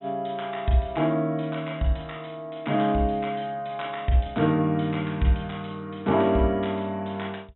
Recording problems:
treble missing; nothing above 3.8 kHz

